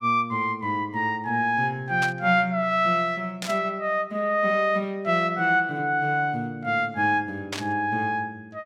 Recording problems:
static burst; at 2 s, at 3.5 s and at 7.5 s; peak -2 dB vs average level

